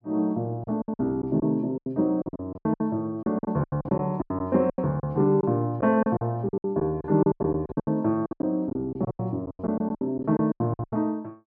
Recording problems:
lost packets; 19% of the sound replaced, filled with silence

